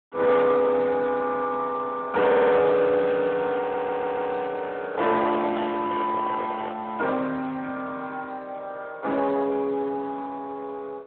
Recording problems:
phone line; 300 Hz to 2.7 kHz, Speex
distortion; soft clipping, signal-to-distortion ratio 12 dB
audio stuttering; at 2.5 s and at 3.5 s
handling noise; from 5 to 6.5 s; peak -2 dB vs average level

